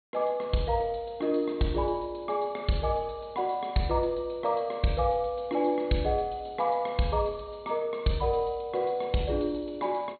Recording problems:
low-pass filter; nothing above 4.3 kHz

